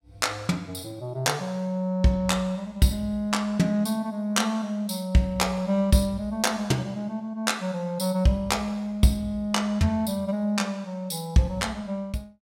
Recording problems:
none

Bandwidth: 16 kHz